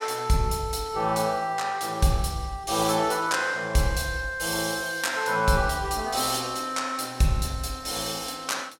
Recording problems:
none

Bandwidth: 16.5 kHz